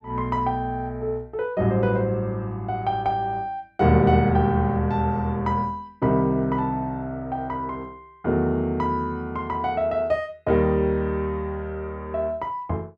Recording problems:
none

